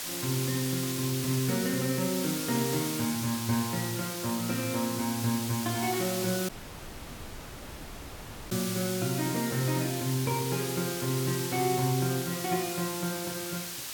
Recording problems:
background hiss; slope +1 dB per octave, SNR 4 dB
dropout; at 6.5 s for 2 s

